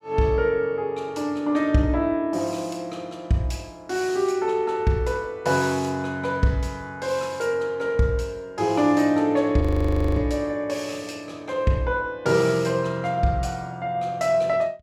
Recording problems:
audio freezing; at 9.5 s for 0.5 s

